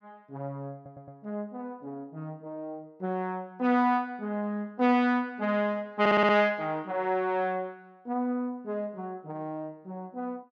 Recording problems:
stutter; at 1 s and at 6 s

